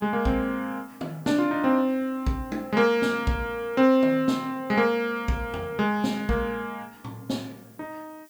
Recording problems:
hiss; slope +4 dB per octave, SNR 28 dB

